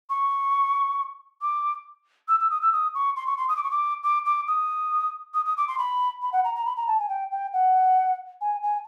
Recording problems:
none

